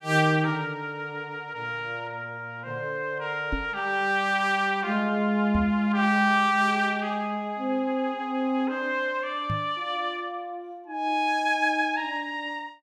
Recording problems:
knock on the microphone; at 3.5 s, at 5.5 s and at 9.5 s; peak -1 dB vs average level

